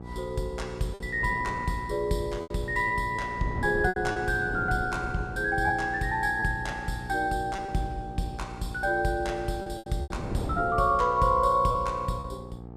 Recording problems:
hum; 60 Hz, harmonics up to 1.2 kHz, SNR 14 dB
wind noise; below 390 Hz, SNR 13 dB
packet loss; 5% of the sound replaced, filled with repeated pitch periods

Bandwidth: 14.5 kHz